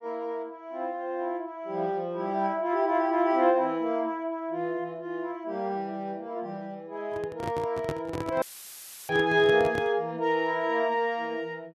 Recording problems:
handling noise; from 7 to 10 s; peak -1 dB vs average level
dropout; at 8.5 s for 0.5 s; filled with static

